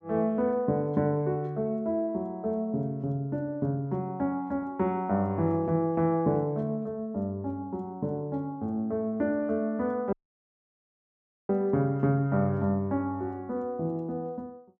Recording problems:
audio cutting out; at 10 s for 1.5 s

